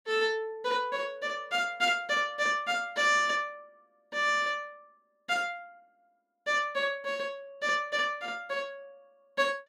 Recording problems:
none

